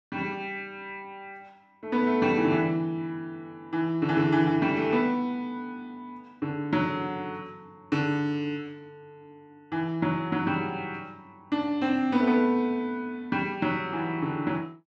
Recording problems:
none

